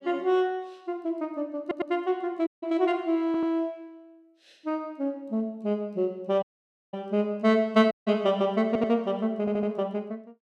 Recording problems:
audio stuttering; 4 times, first at 1.5 s
dropout; at 2.5 s, at 6.5 s for 0.5 s and at 8 s

